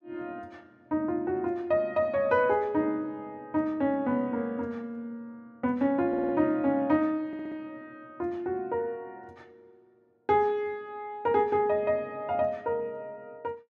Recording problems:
stutter; at 6 s and at 7.5 s

